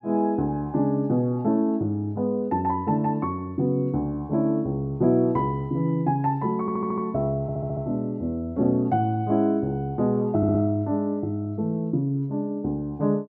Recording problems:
audio stuttering; at 6.5 s, at 7.5 s and at 10 s

